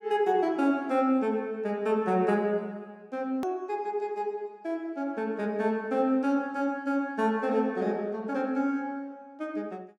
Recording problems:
click at an edit; at 3.5 s

